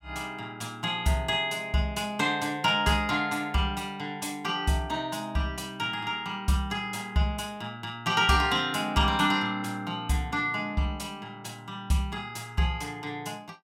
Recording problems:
none

